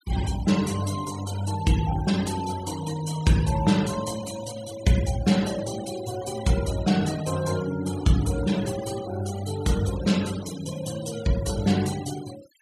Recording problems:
noise reduction artefacts; signal-to-artefact ratio 14 dB

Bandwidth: 14.5 kHz